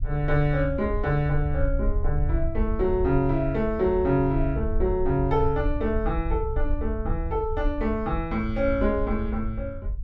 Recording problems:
rumble; below 68 Hz, SNR 5 dB

